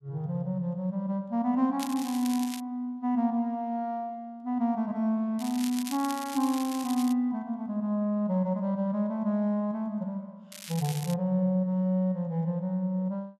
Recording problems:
crackling; at 2 s, from 5.5 to 7 s and at 11 s; loose cable, SNR 12 dB

